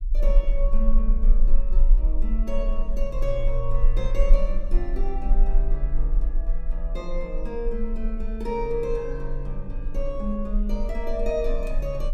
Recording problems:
rumble; below 36 Hz, strongest tone 22 Hz, SNR -4 dB

